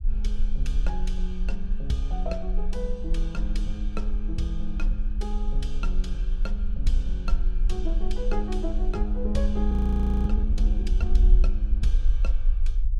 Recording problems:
low-frequency rumble; below 46 Hz, SNR -6 dB
frozen audio; at 9.5 s for 0.5 s

